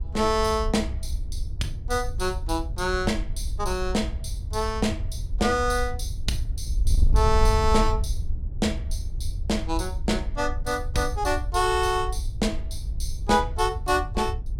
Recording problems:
wind noise; below 72 Hz, SNR 4 dB

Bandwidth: 16 kHz